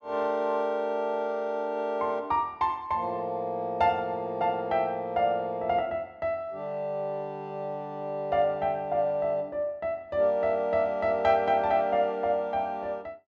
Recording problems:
none

